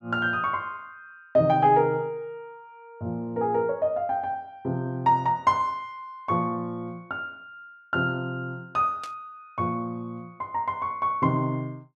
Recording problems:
static burst; at 9 s; peak -10 dB vs average level

